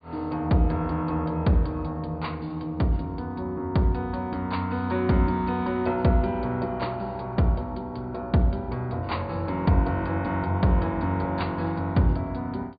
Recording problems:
treble cut off; nothing above 4.7 kHz

